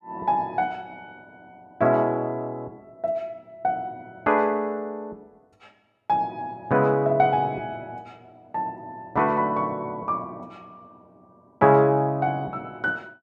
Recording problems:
none

